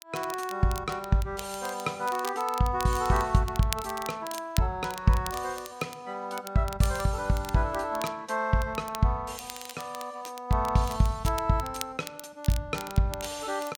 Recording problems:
crackle; vinyl, SNR 14 dB

